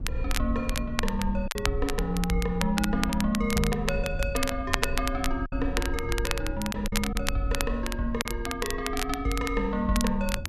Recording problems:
low-frequency rumble; below 66 Hz, SNR 6 dB
crackling; vinyl, SNR 5 dB
lost packets; 2% of the sound replaced, filled with silence

